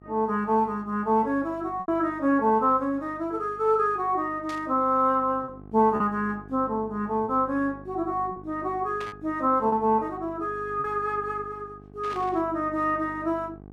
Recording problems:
hum; 50 Hz, harmonics up to 1.2 kHz, SNR 21 dB
lost packets; 3% of the sound replaced, filled with repeated pitch periods
burst of static; at 4.5 s, at 9 s and at 12 s; peak -10 dB vs average level

